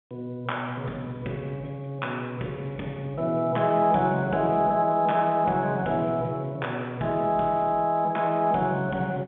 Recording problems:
phone line; 150 Hz to 4 kHz, G.711

